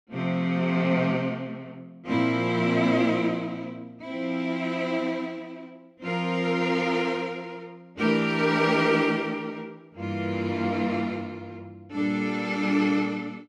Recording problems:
none

